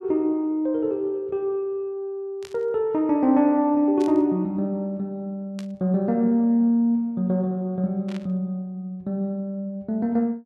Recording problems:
static burst; 4 times, first at 2.5 s; peak -14 dB vs average level

